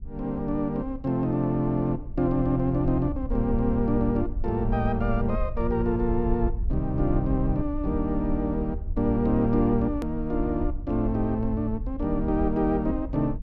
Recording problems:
rumble; below 66 Hz, SNR 8 dB
click at an edit; at 10 s

